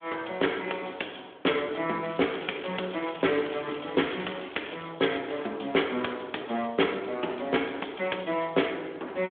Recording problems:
phone line; 240 Hz to 3.4 kHz, Speex
crackle; from 2 to 5 s; loose cable, SNR 15 dB

